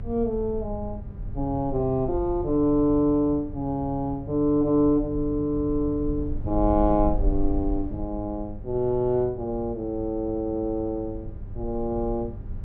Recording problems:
electrical hum; 50 Hz, harmonics up to 800 Hz, SNR 19 dB
low-frequency rumble; below 62 Hz, SNR 11 dB

